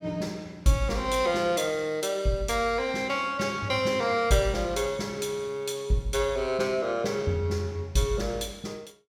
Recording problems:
none

